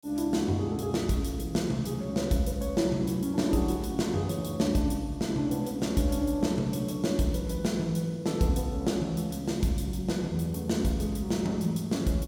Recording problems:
none

